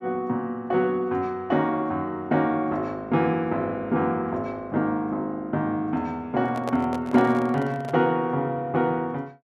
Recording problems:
microphone handling noise; from 6.5 to 8 s; peak -3 dB vs average level

